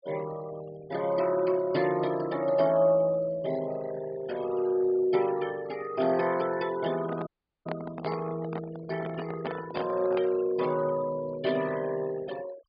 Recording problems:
treble cut off; nothing above 4.9 kHz
noise reduction artefacts; signal-to-artefact ratio 18 dB
handling noise; from 7 to 10 s; peak -3 dB vs average level
audio cutting out; at 7.5 s

